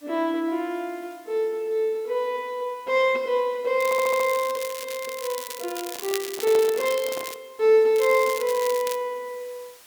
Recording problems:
hiss; slope 0 dB per octave, SNR 27 dB
crackle; from 4 to 7.5 s and from 8 to 9 s; loose cable, SNR 11 dB
audio stuttering; at 4 s
microphone handling noise; from 6 to 7.5 s; peak -7 dB vs average level

